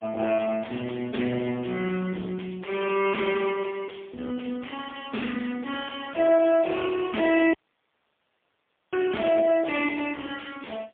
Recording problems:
telephone audio; 240 Hz to 3.3 kHz, AMR-NB, then MP3
distortion; soft clipping, signal-to-distortion ratio 10 dB
audio cutting out; at 7.5 s for 1.5 s

